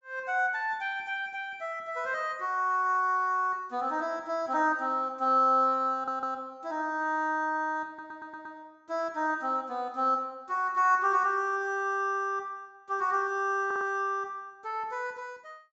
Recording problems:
treble cut off; nothing above 7.8 kHz
stutter; at 6 s, at 8 s and at 14 s

